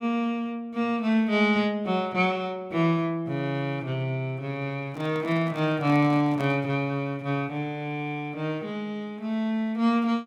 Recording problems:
handling noise; from 5 to 6.5 s; peak -7 dB vs average level

